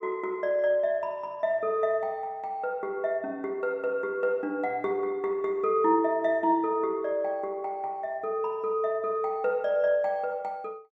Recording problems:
none

